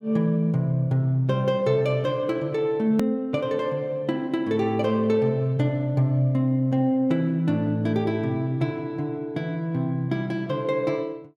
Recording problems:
edit click; at 3 s

